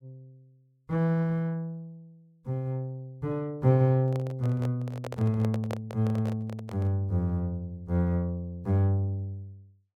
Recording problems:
microphone handling noise; from 4 to 7 s; peak -4 dB vs average level

